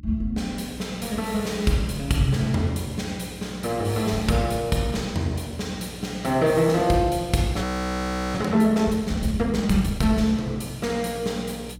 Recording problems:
electrical hum; 60 Hz, harmonics up to 300 Hz, SNR 20 dB
audio freezing; at 7.5 s for 0.5 s

